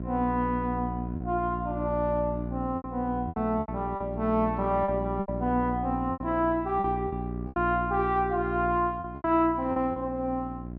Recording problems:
electrical hum; 60 Hz, harmonics up to 720 Hz, SNR 7 dB
lost packets; 8% of the sound replaced, filled with repeated pitch periods

